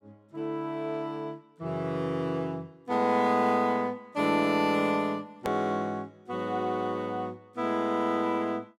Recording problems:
edit click; at 5.5 s

